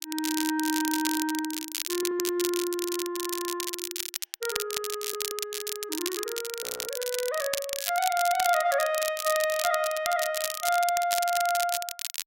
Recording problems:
crackle; vinyl, SNR 3 dB
stutter; at 2 s and at 5 s
audio freezing; at 6.5 s

